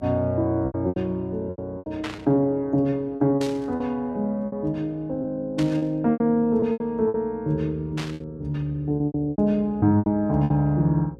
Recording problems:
hum; 60 Hz, harmonics up to 540 Hz, SNR 24 dB
packet loss; 12% of the sound replaced, filled with repeated pitch periods
burst of static; 4 times, first at 2 s; peak -5 dB vs average level

